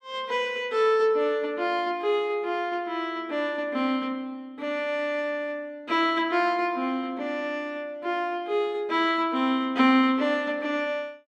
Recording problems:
none

